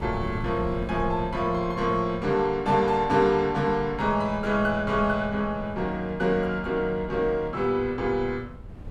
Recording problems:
wind on the microphone; below 160 Hz, SNR 15 dB

